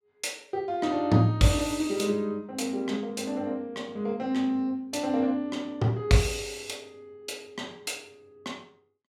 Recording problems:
none

